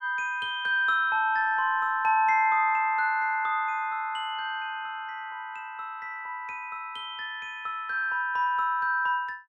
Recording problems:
none

